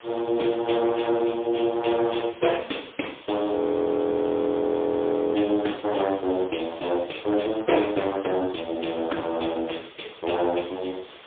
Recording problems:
phone line; 240 Hz to 3.4 kHz, AMR-NB, then MP3
hiss; SNR 20 dB
audio freezing; at 3.5 s for 2 s

